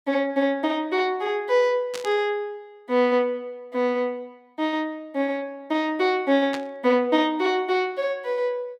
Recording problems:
burst of static; at 2 s and at 6.5 s; peak -5 dB vs average level

